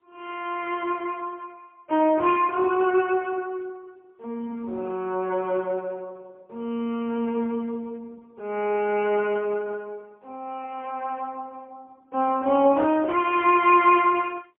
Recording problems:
phone line; 280 Hz to 3.1 kHz, AMR-NB, then MP3

